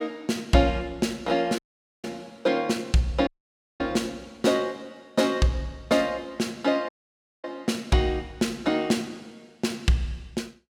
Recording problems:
dropout; at 1.5 s, at 3.5 s for 0.5 s and at 7 s for 0.5 s

